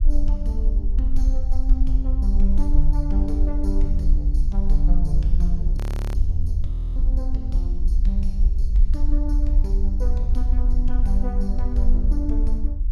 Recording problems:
rumble; below 50 Hz, SNR -7 dB
frozen audio; at 6 s and at 6.5 s

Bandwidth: 15 kHz